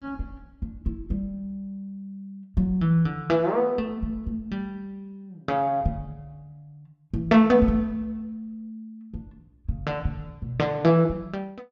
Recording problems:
none

